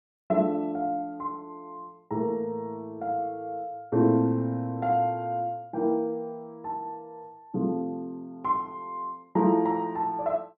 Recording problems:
none

